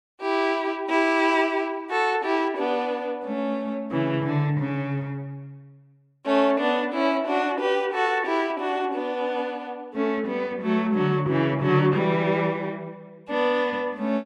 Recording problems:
none

